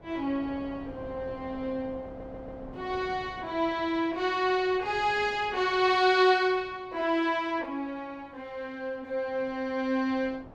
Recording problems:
wind noise; below 680 Hz, SNR 20 dB
stutter; at 2 s

